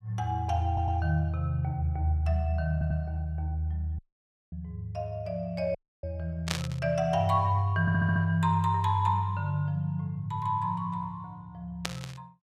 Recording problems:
audio stuttering; at 0.5 s, at 2.5 s and at 8 s
audio cutting out; at 4 s for 0.5 s and at 6 s
static burst; at 6.5 s and at 12 s; peak +3 dB vs average level

